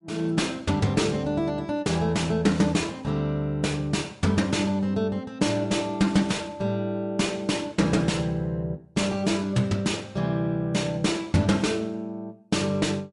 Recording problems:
lossy codec; MP3, log-spectral distance 2 dB, nothing above 10.7 kHz
distorted audio; soft clipping, signal-to-distortion ratio 10 dB

